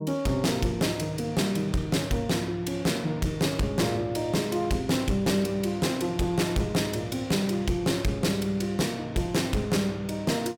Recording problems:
distortion; hard clipping, signal-to-distortion ratio 11 dB

